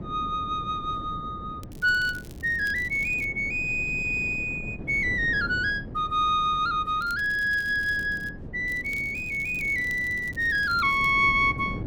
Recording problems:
wind on the microphone; below 290 Hz, SNR 15 dB
crackling; from 1.5 to 3.5 s, from 7 to 8.5 s and from 8.5 to 11 s; loose cable, SNR 25 dB

